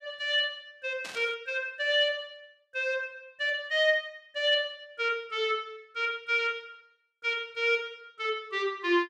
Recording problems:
static burst; at 1 s; peak -7 dB vs average level

